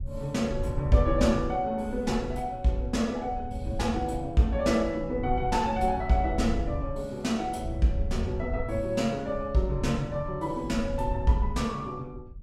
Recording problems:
wind on the microphone; below 90 Hz, SNR 9 dB

